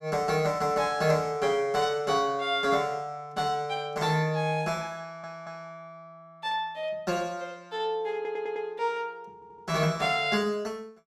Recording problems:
audio stuttering; at 5 s, at 8 s and at 9.5 s

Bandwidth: 12.5 kHz